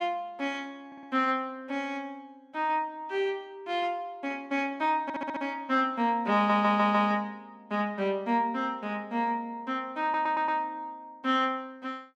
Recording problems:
audio stuttering; 4 times, first at 1 s

